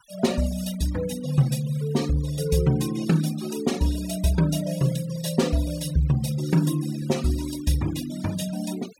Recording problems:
noise reduction artefacts; signal-to-artefact ratio 16 dB

